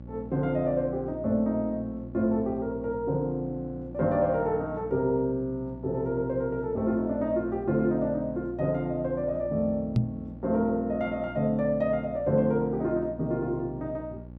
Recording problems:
mains hum; 60 Hz, harmonics up to 840 Hz, SNR 15 dB
knock on the microphone; at 10 s; peak +8 dB vs average level

